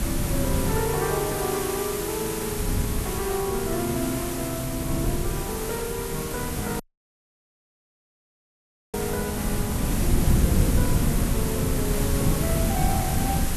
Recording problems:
background hiss; slope -2 dB per octave, SNR 2 dB
wind noise; below 180 Hz, SNR -2 dB
dropout; at 7 s for 2 s

